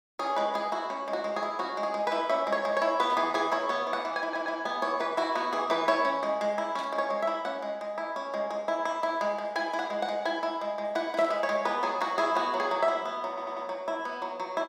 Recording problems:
burst of static; at 3 s, at 7 s and at 11 s; peak -12 dB vs average level
audio stuttering; at 4 s and at 13 s

